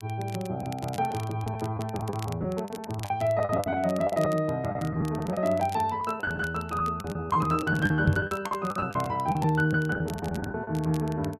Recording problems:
crackling; vinyl, SNR 20 dB
lost packets; 13% of the sound replaced, filled with the last packet
knock on the microphone; at 8 s; peak +7 dB vs average level

